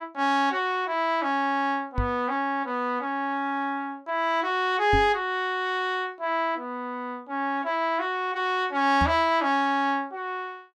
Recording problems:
microphone thump; at 2 s, at 5 s and at 9 s; peak +2 dB vs average level

